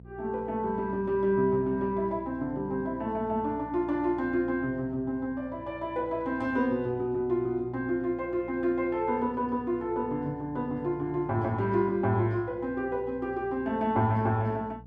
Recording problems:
hum; 60 Hz, harmonics up to 540 Hz, SNR 20 dB

